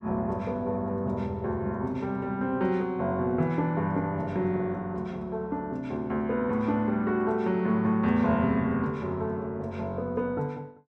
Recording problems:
none

